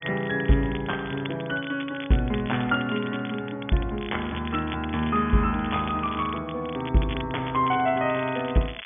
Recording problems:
treble missing; nothing above 3.5 kHz
crackling; vinyl, SNR 15 dB

